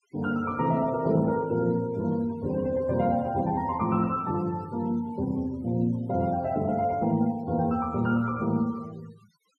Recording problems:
noise reduction artefacts; signal-to-artefact ratio 23 dB

